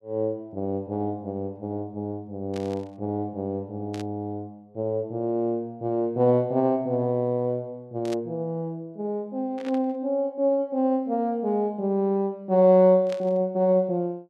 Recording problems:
static burst; 5 times, first at 2.5 s; peak -10 dB vs average level

